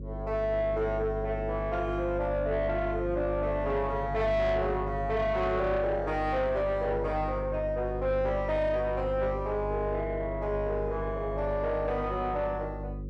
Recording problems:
distortion; soft clipping, signal-to-distortion ratio 11 dB
electrical hum; 50 Hz, harmonics up to 550 Hz, SNR 8 dB

